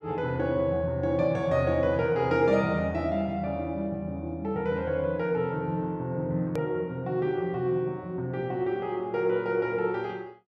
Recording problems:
click at an edit; at 6.5 s

